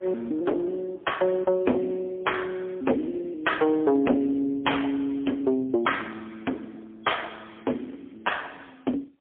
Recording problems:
phone line; 220 Hz to 3.3 kHz, AMR-NB, then MP3
distorted audio; soft clipping, signal-to-distortion ratio 10 dB

